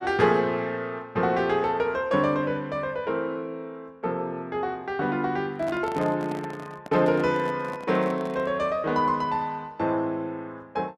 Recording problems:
handling noise; from 5.5 to 8.5 s; peak -7 dB vs average level

